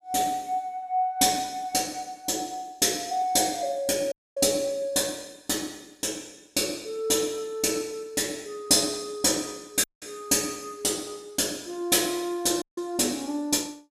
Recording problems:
audio cutting out; at 4 s, at 10 s and at 13 s

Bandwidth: 15 kHz